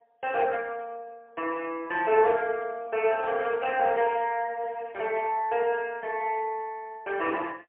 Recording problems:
phone line; 280 Hz to 3.1 kHz, AMR-NB, then MP3

